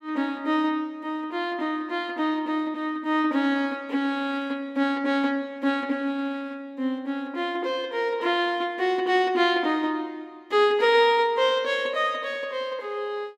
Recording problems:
none

